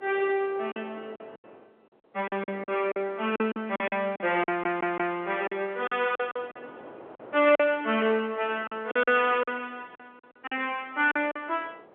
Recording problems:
telephone audio; 320 Hz to 3.3 kHz, G.711
wind noise; below 820 Hz, SNR 22 dB
lost packets; 11% of the sound replaced, filled with silence
stutter; at 4.5 s

